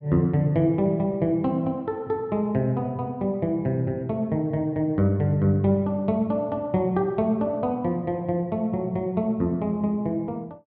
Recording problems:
none

